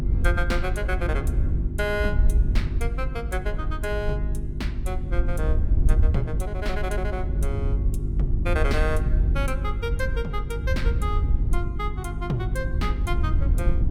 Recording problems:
electrical hum; 50 Hz, harmonics up to 400 Hz, SNR 1 dB
wind noise; below 76 Hz, SNR -4 dB

